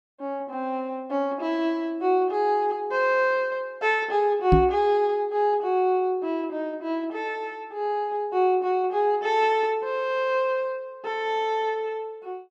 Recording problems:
microphone thump; at 4.5 s; peak +8 dB vs average level

